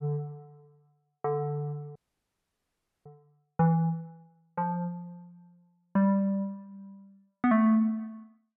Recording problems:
frozen audio; at 2 s for 1 s

